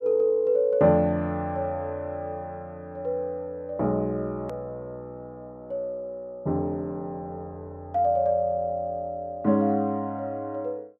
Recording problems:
click at an edit; at 4.5 s

